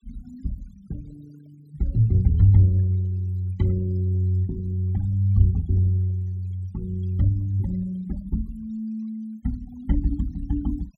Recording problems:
denoising artefacts; signal-to-artefact ratio 27 dB

